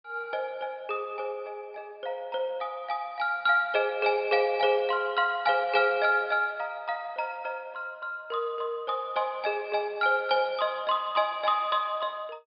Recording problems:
low-pass filter; nothing above 5.5 kHz

